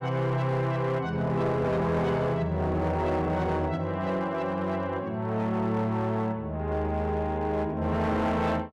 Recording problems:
distorted audio; hard clipping, signal-to-distortion ratio 12 dB

